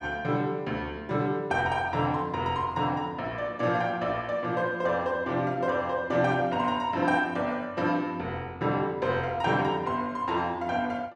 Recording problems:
none

